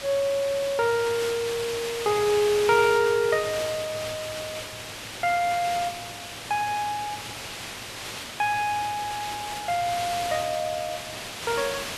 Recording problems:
background hiss; slope -1 dB per octave, SNR 8 dB

